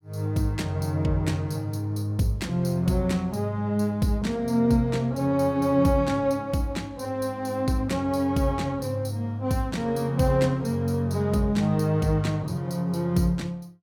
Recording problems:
none

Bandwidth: 18 kHz